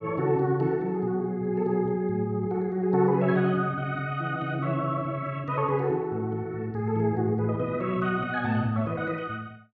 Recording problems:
none

